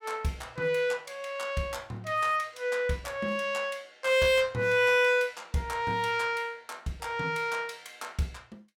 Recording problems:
distortion; hard clipping, signal-to-distortion ratio 12 dB

